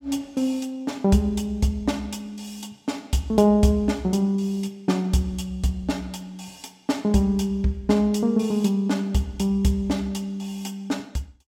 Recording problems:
none

